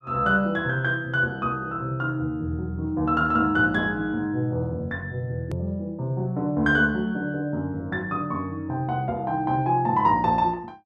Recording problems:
click at an edit; at 5.5 s

